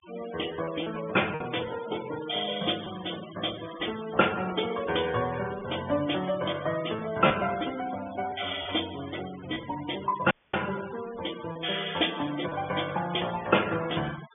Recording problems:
treble missing; nothing above 3.5 kHz
denoising artefacts; signal-to-artefact ratio 13 dB
packet loss; 1.9% of the sound replaced, filled with repeated pitch periods
audio cutting out; at 10 s

